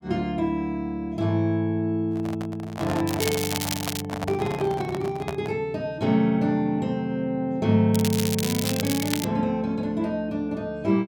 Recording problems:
handling noise; from 2 to 5.5 s; peak -2 dB vs average level
crackling; from 3 to 4 s and from 8 to 9.5 s; loose cable, SNR 5 dB

